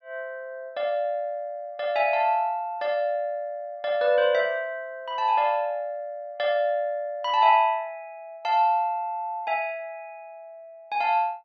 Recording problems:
none

